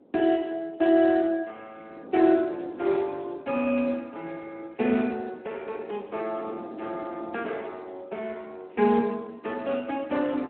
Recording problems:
phone line; 260 Hz to 3.3 kHz, Speex
wind on the microphone; below 470 Hz, SNR 20 dB

